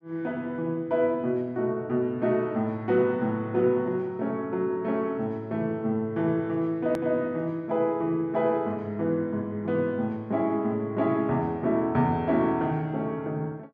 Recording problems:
edit click; at 7 s

